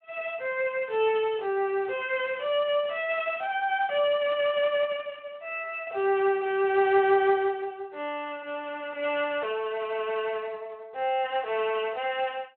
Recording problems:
telephone audio; 320 Hz to 3.5 kHz, Speex

